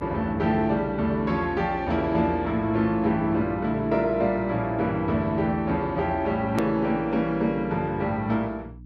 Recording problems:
electrical hum; 60 Hz, harmonics up to 300 Hz, SNR 18 dB
click at an edit; at 6.5 s

